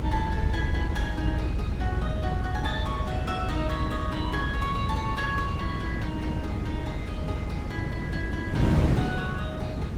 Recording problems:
lossy codec; Opus, log-spectral distance 2 dB, nothing above 17.4 kHz
low-frequency rumble; below 80 Hz, strongest tone 56 Hz, SNR 2 dB
wind on the microphone; below 210 Hz, SNR -4 dB

